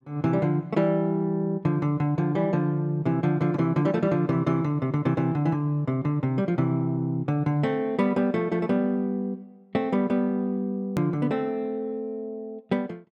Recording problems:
hard cut with a click; at 11 s

